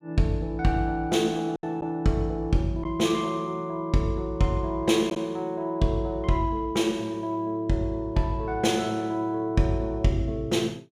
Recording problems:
packet loss; 1% of the sound replaced, filled with silence

